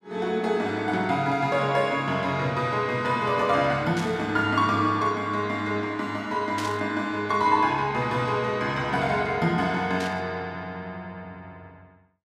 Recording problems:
static burst; at 4 s, at 6.5 s and at 10 s; peak -5 dB vs average level

